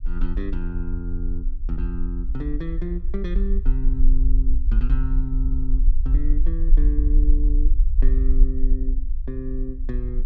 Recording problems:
low-frequency rumble; below 44 Hz, strongest tone 20 Hz, SNR -8 dB

